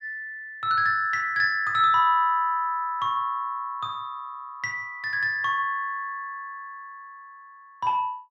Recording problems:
none

